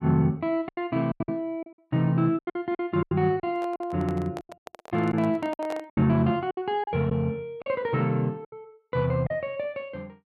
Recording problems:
lost packets; 11% of the sound replaced, filled with silence
handling noise; from 3.5 to 6 s; peak -6 dB vs average level

